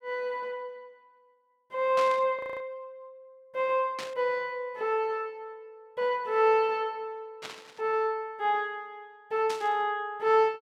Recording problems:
static burst; 4 times, first at 2 s; peak -5 dB vs average level
audio freezing; at 2.5 s

